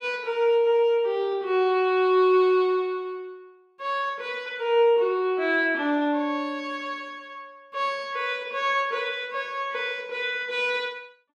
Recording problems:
none

